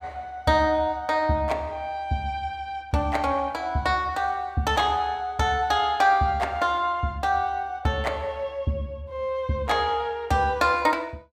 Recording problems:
none

